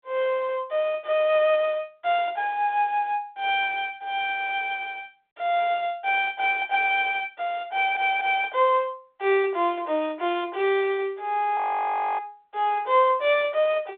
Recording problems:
telephone audio; 320 Hz to 3.6 kHz, G.726
audio stuttering; at 7.5 s
audio freezing; at 12 s for 0.5 s

